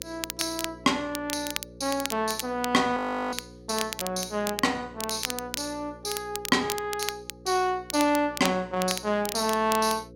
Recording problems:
hum; 60 Hz, harmonics up to 540 Hz, SNR 20 dB
crackle; vinyl, SNR 8 dB
audio freezing; at 3 s

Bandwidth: 16 kHz